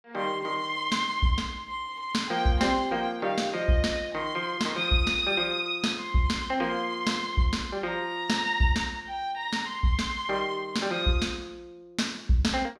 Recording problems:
none

